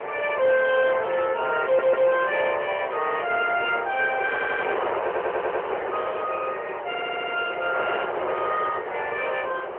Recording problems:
phone line; 370 Hz to 3.2 kHz, AMR-NB
distorted audio; soft clipping, signal-to-distortion ratio 11 dB
wind on the microphone; below 1.2 kHz, SNR 6 dB
stutter; 4 times, first at 1.5 s

